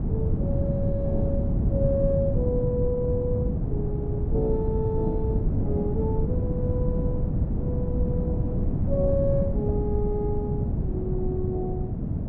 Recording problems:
wind noise; below 190 Hz, SNR -4 dB

